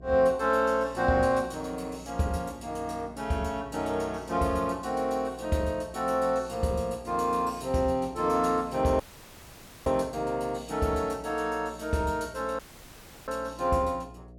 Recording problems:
hum; 60 Hz, harmonics up to 720 Hz, SNR 20 dB
dropout; at 9 s for 1 s and at 13 s for 0.5 s

